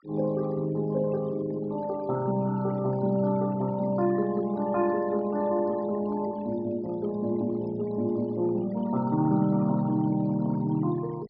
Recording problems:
treble cut off; nothing above 5.5 kHz
noise reduction artefacts; signal-to-artefact ratio 21 dB

